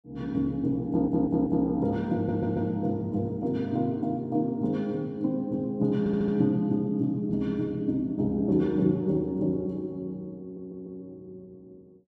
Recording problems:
stutter; 4 times, first at 1 s

